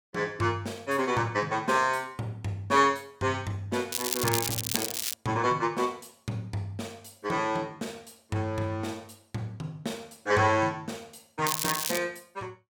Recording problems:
crackling; from 4 to 5 s and at 11 s; loose cable, SNR 1 dB

